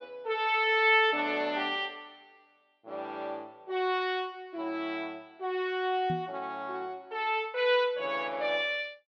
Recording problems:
microphone bump; at 6 s; peak -2 dB vs average level

